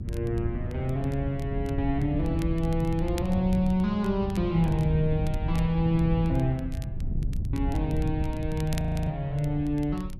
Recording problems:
hum; 60 Hz, harmonics up to 360 Hz, SNR 20 dB
wind on the microphone; below 120 Hz, SNR 5 dB
crackling; vinyl, SNR 23 dB
frozen audio; at 8.5 s

